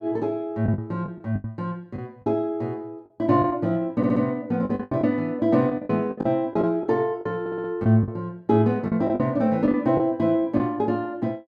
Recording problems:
packet loss; 9% of the sound replaced, filled with the last packet
audio stuttering; at 4 s and at 7.5 s

